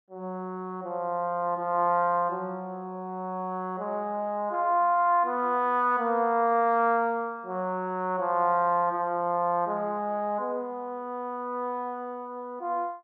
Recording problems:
none

